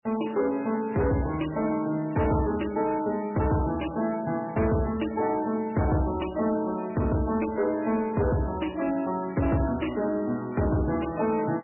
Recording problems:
codec artefacts; MP3, log-spectral distance 5 dB, nothing above 2.9 kHz
distortion; soft clipping, signal-to-distortion ratio 12 dB

